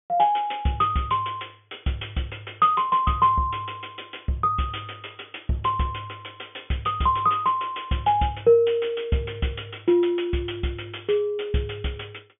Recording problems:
treble missing; nothing above 3.5 kHz

